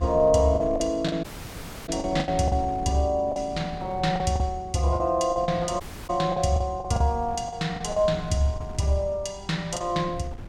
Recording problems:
wind on the microphone; below 150 Hz, SNR 16 dB
lost packets; 9% of the sound replaced, filled with the last packet
audio cutting out; at 1 s for 0.5 s and at 6 s

